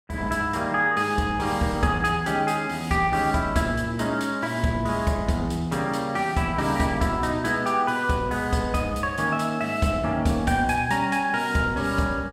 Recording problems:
none

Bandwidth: 16.5 kHz